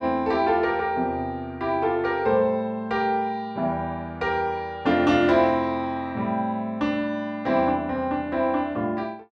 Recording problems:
none

